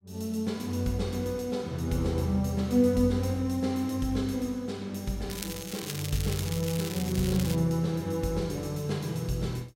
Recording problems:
crackling; from 5.5 to 7.5 s; loose cable, SNR 9 dB

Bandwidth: 16 kHz